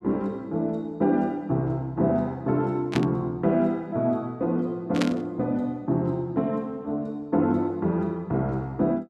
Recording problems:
burst of static; at 3 s and at 5 s; peak +1 dB vs average level

